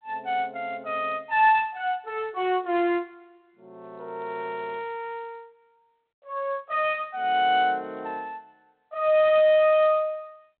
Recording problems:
telephone audio; 190 Hz to 3.7 kHz, G.726

